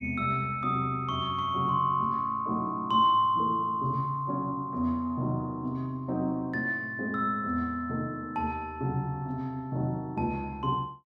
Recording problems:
none

